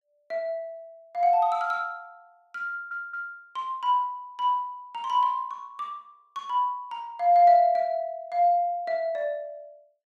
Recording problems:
audio stuttering; at 2.5 s

